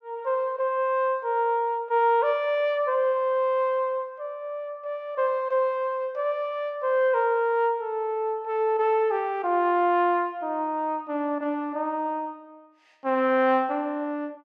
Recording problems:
none

